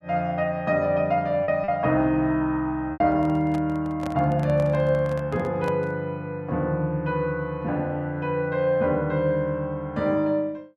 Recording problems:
lost packets; 1.5% of the sound replaced, filled with repeated pitch periods
handling noise; from 3 to 6 s; peak -6 dB vs average level

